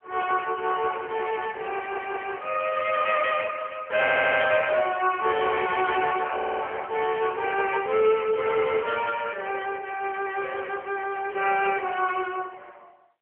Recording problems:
phone line; 320 Hz to 3.2 kHz, AMR-NB
audio stuttering; at 2 s, at 4 s and at 6.5 s

